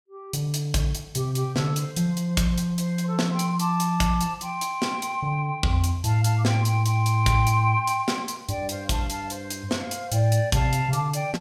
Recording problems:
none

